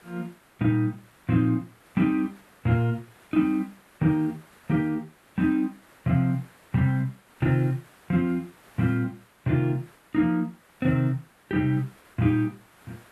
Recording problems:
background hiss; SNR 28 dB

